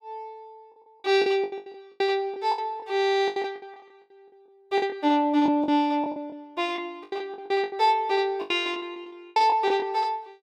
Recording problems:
packet loss; 15% of the sound replaced, filled with the last packet

